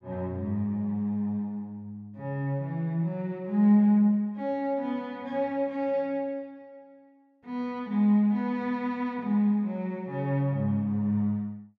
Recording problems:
none

